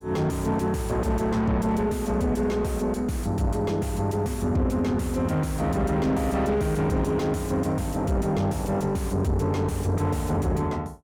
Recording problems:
distortion; soft clipping, signal-to-distortion ratio 6 dB

